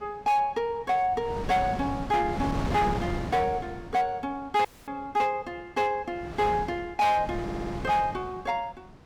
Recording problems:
distorted audio; hard clipping, signal-to-distortion ratio 12 dB
wind noise; below 530 Hz, SNR 8 dB
dropout; at 4.5 s
audio stuttering; at 7.5 s

